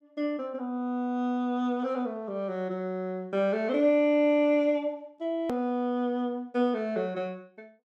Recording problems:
click at an edit; at 5.5 s

